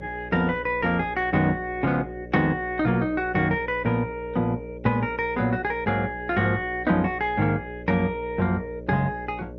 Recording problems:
lossy codec; Opus, then MP2, log-spectral distance 2 dB, nothing above 6 kHz
hum; 60 Hz, harmonics up to 600 Hz, SNR 15 dB

